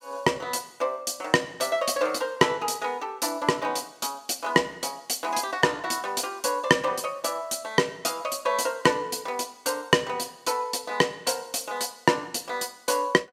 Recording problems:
none

